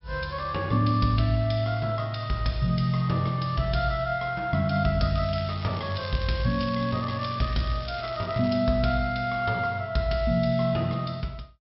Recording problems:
treble cut off; nothing above 5.5 kHz
crackle; from 5 to 8.5 s; loose cable, SNR 17 dB

